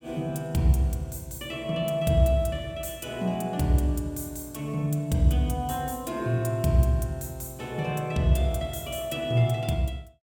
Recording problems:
none

